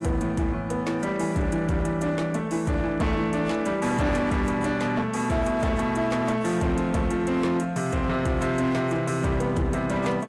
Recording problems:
lossy codec; AAC, log-spectral distance 2 dB
distorted audio; hard clipping, uneven, signal-to-distortion ratio 12 dB

